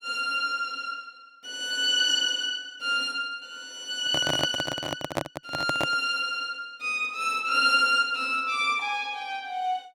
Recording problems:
microphone handling noise; from 4 to 6 s; peak +2 dB vs average level

